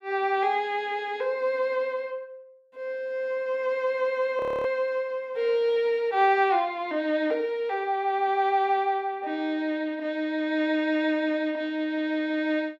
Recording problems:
frozen audio; at 4.5 s

